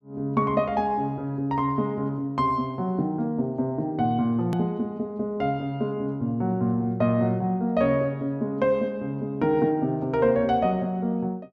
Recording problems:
hard cut with a click; at 4.5 s

